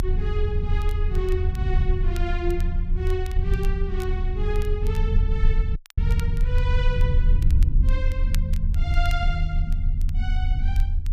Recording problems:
rumble; below 76 Hz, strongest tone 32 Hz, SNR -6 dB
crackling; vinyl, SNR 17 dB
dropout; at 6 s

